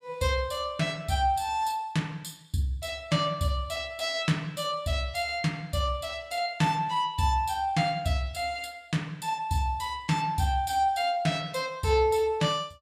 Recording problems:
none

